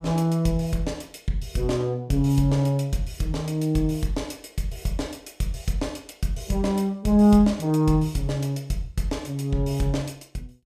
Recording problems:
none

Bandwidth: 15.5 kHz